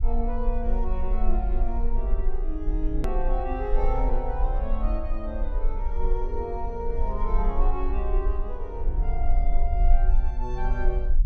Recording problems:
low-frequency rumble; below 42 Hz, strongest tone 18 Hz, SNR -5 dB
click at an edit; at 3 s

